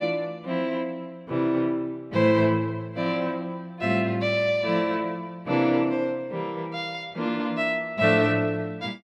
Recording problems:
none

